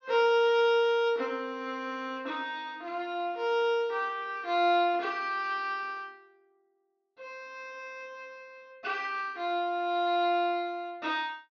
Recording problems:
treble cut off; nothing above 6.6 kHz

